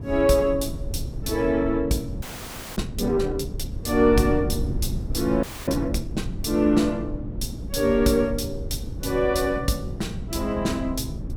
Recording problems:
wind noise; below 150 Hz, SNR 8 dB
audio freezing; at 2 s for 0.5 s and at 5.5 s

